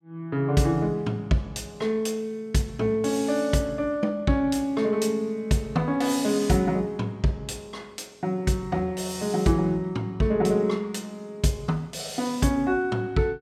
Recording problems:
none

